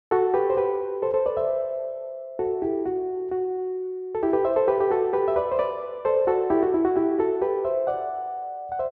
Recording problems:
treble missing; nothing above 7.6 kHz

